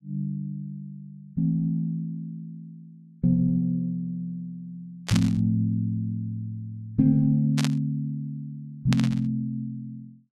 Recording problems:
burst of static; at 5 s, at 7.5 s and at 9 s; peak 0 dB vs average level

